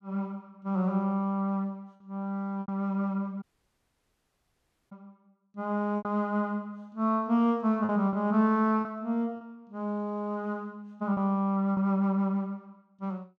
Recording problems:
lost packets; 4% of the sound replaced, filled with repeated pitch periods
dropout; at 3.5 s for 1.5 s

